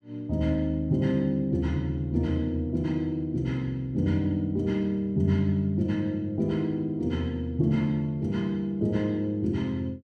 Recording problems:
none

